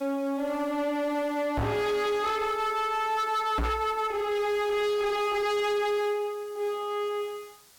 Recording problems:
distorted audio; hard clipping, signal-to-distortion ratio 6 dB
hiss; slope 0 dB per octave, SNR 25 dB
knock on the microphone; at 1.5 s and at 3.5 s; peak +3 dB vs average level

